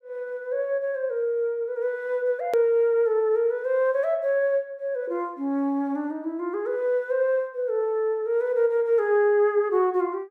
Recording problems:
click at an edit; at 2.5 s

